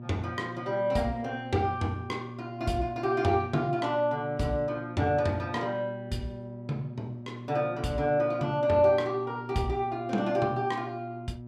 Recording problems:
hum; 60 Hz, harmonics up to 720 Hz, SNR 12 dB

